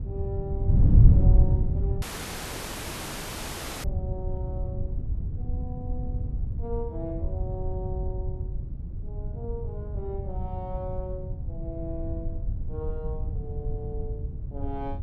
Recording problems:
wind on the microphone; below 110 Hz, SNR -10 dB
audio cutting out; at 2 s for 2 s

